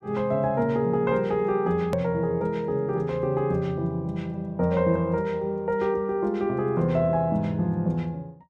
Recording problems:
edit click; at 2 s

